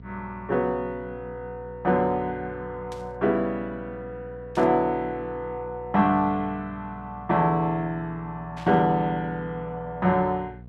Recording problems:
hum; 60 Hz, harmonics up to 720 Hz, SNR 18 dB
static burst; at 3 s, at 4.5 s and at 8.5 s; peak -12 dB vs average level

